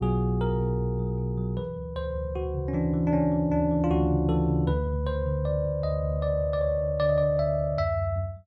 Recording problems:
none

